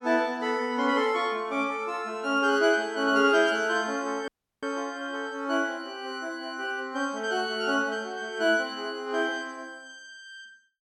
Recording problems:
dropout; at 4.5 s

